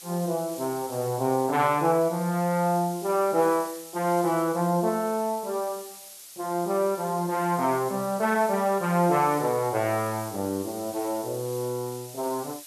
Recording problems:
hiss; slope +3 dB per octave, SNR 15 dB

